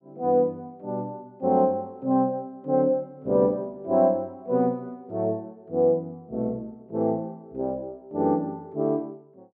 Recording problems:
none

